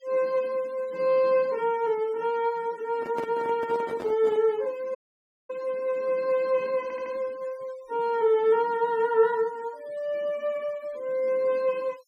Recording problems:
noise reduction artefacts; signal-to-artefact ratio 26 dB
microphone handling noise; from 3 to 4.5 s; peak -6 dB vs average level
audio cutting out; at 5 s for 0.5 s
audio stuttering; at 7 s

